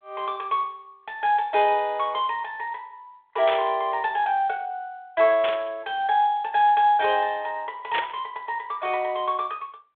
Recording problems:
phone line; 320 Hz to 3.7 kHz, G.726
static burst; at 3.5 s, at 5.5 s and at 8 s; peak -1 dB vs average level

